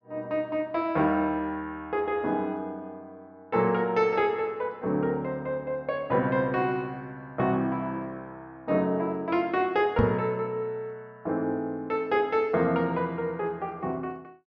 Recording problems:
treble missing; nothing above 6.6 kHz
microphone bump; at 10 s; peak +6 dB vs average level

